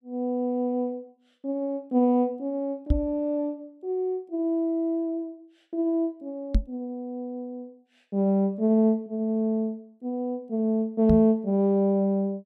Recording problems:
microphone bump; at 3 s, at 6.5 s and at 11 s; peak +6 dB vs average level

